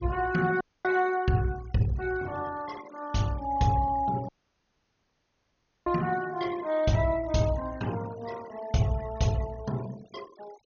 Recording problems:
treble cut off; nothing above 6.7 kHz
denoising artefacts; signal-to-artefact ratio 19 dB
audio cutting out; at 0.5 s and at 4.5 s for 1.5 s

